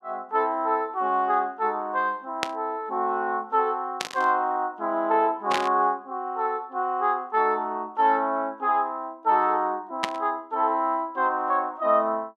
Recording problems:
burst of static; 4 times, first at 2.5 s; peak +3 dB vs average level

